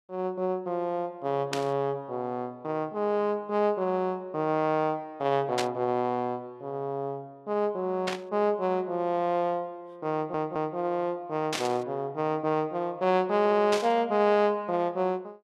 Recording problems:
static burst; 5 times, first at 1.5 s; peak +2 dB vs average level
stutter; at 10 s and at 13 s

